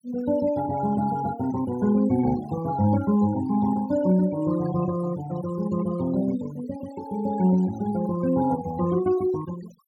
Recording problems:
noise reduction artefacts; signal-to-artefact ratio 16 dB

